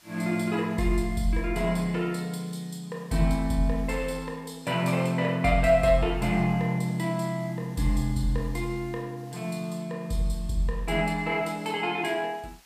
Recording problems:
hiss; slope +1 dB per octave, SNR 28 dB

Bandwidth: 15 kHz